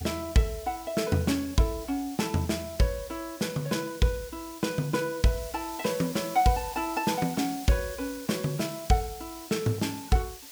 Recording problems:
background hiss; slope +1 dB per octave, SNR 14 dB

